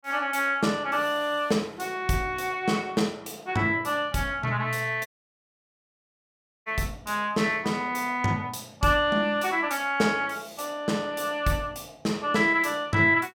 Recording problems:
dropout; at 5 s for 1.5 s

